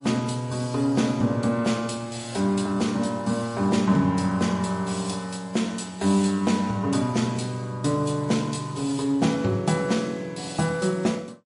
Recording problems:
lossy codec; MP3, log-spectral distance 4 dB, nothing above 10.4 kHz

